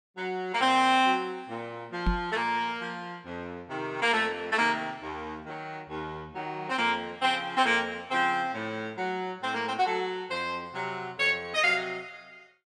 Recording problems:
knock on the microphone; at 2 s; peak +5 dB vs average level

